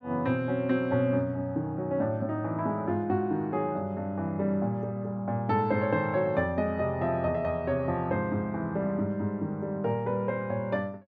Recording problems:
none

